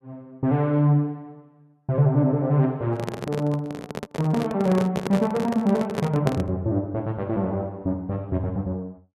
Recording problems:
handling noise; from 3 to 6.5 s; peak +2 dB vs average level

